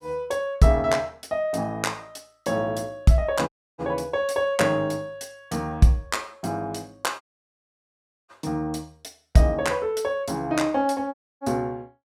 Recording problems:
dropout; at 3.5 s, at 7 s for 1 s and at 11 s

